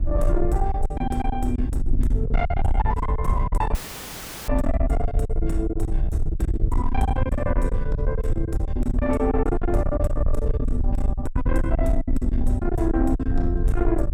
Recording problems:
distorted audio; soft clipping, signal-to-distortion ratio 11 dB
rumble; below 68 Hz, SNR -1 dB
packet loss; 17% of the sound replaced, filled with silence
audio cutting out; at 4 s for 0.5 s; filled with static

